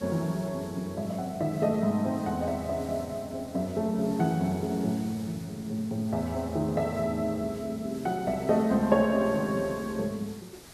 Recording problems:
hiss; slope -3 dB per octave, SNR 19 dB

